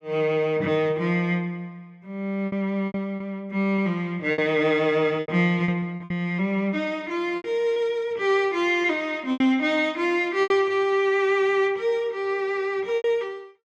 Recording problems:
lost packets; 6% of the sound replaced, filled with repeated pitch periods

